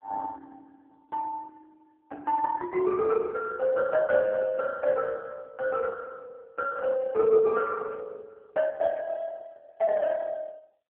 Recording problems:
telephone audio; 320 Hz to 2.1 kHz, AMR-NB

